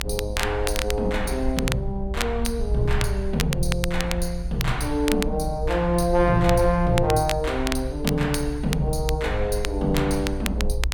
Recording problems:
rumble; below 60 Hz, SNR 6 dB
crackling; vinyl, SNR 9 dB

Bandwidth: 18 kHz